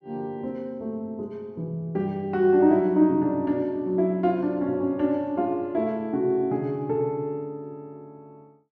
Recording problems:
none

